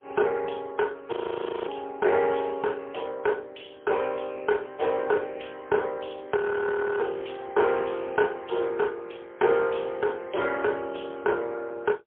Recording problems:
telephone audio; 320 Hz to 2.8 kHz, AMR-NB, then MP3
frozen audio; at 1 s for 0.5 s and at 6.5 s for 0.5 s

